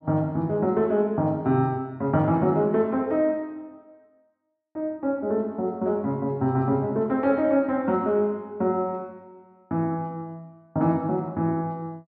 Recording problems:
none

